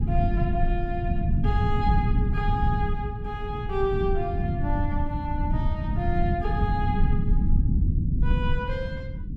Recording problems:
rumble; below 130 Hz, SNR -4 dB

